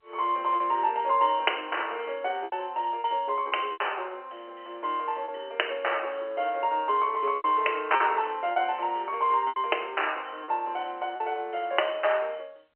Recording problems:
phone line; 300 Hz to 3.1 kHz, G.711
packet loss; 5% of the sound replaced, filled with repeated pitch periods

